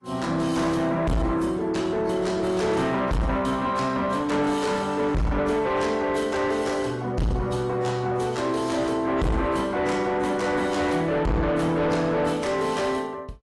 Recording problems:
codec artefacts; AAC, log-spectral distance 2 dB, nothing above 11.3 kHz
distortion; soft clipping, signal-to-distortion ratio 6 dB

